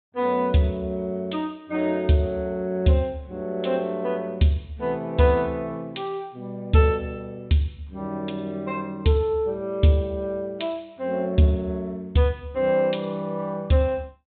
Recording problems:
treble missing; nothing above 4 kHz

